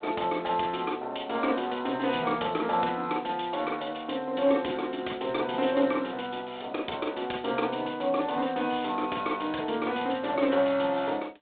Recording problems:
telephone audio; 260 Hz to 3.6 kHz, G.726

